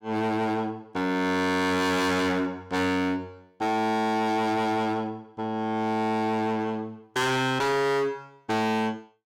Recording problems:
distortion; hard clipping, signal-to-distortion ratio 6 dB

